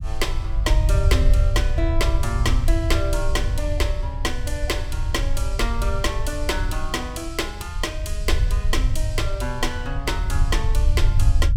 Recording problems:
low-frequency rumble; below 72 Hz, SNR -3 dB

